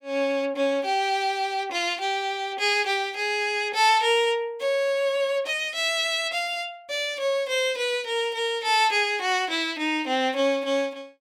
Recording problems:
none

